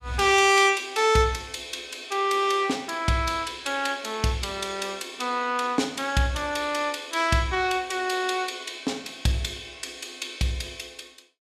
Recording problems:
none

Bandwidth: 14.5 kHz